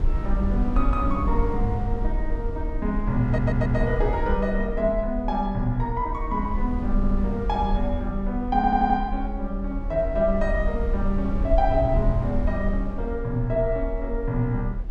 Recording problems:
rumble; below 60 Hz, SNR 4 dB
audio stuttering; at 3.5 s, at 7 s and at 8.5 s

